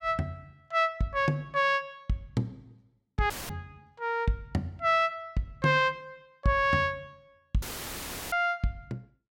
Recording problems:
audio cutting out; at 3.5 s and at 7.5 s for 0.5 s; filled with static

